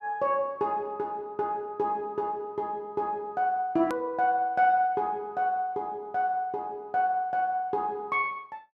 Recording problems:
click at an edit; at 4 s

